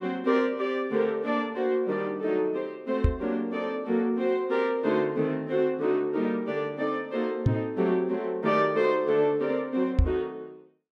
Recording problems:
knock on the microphone; at 3 s, at 7.5 s and at 10 s; peak +8 dB vs average level

